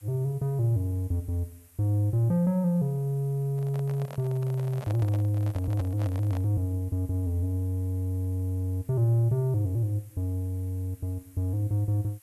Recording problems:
background hiss; SNR 27 dB
handling noise; from 3.5 to 6.5 s; peak -9 dB vs average level

